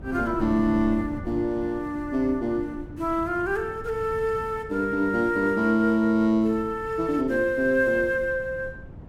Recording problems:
wind noise; below 220 Hz, SNR 16 dB

